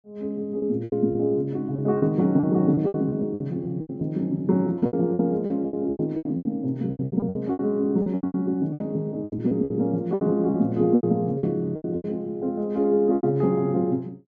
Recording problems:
packet loss; 16% of the sound replaced, filled with repeated pitch periods

